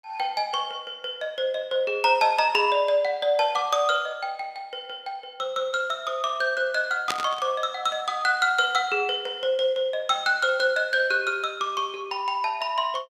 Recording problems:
burst of static; at 7 s; peak +1 dB vs average level

